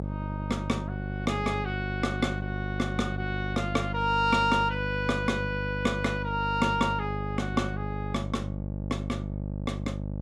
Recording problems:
hum; 50 Hz, harmonics up to 650 Hz, SNR 4 dB

